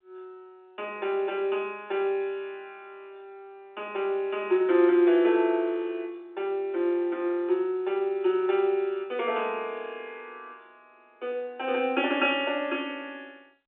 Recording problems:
telephone audio; 300 Hz to 4 kHz, G.711

